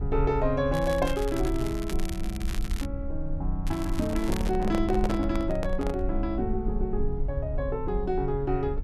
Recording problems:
low-frequency rumble; below 58 Hz, SNR 5 dB
crackling; from 0.5 to 3 s and at 3.5 s; loose cable, SNR 13 dB
handling noise; from 4 to 6 s; peak 0 dB vs average level

